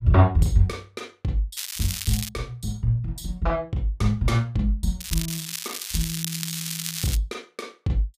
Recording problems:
crackling; at 1.5 s and from 5 to 7 s; loose cable, SNR 4 dB

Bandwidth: 15 kHz